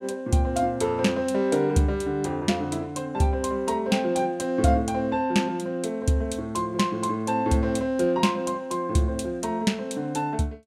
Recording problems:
none

